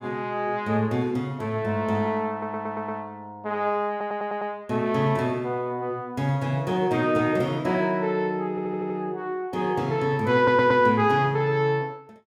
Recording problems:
stutter; 4 times, first at 2.5 s

